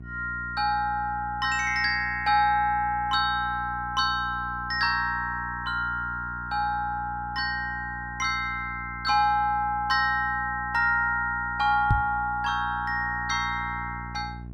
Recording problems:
hum; 60 Hz, harmonics up to 420 Hz, SNR 15 dB
microphone thump; at 12 s; peak +5 dB vs average level

